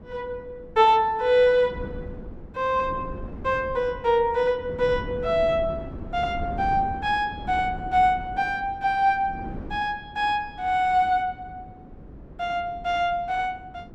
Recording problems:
wind on the microphone; below 290 Hz, SNR 15 dB

